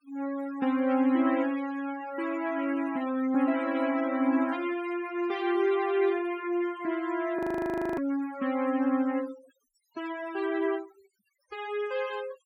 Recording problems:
noise reduction artefacts; signal-to-artefact ratio 17 dB
audio freezing; at 7.5 s for 0.5 s

